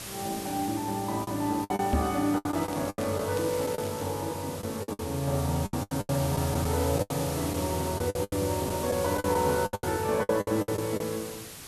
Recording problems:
background hiss; slope -1 dB per octave, SNR 10 dB
lost packets; 13% of the sound replaced, filled with the last packet
knock on the microphone; at 2 s; peak +6 dB vs average level
crackling; from 2.5 to 4 s; loose cable, SNR 18 dB

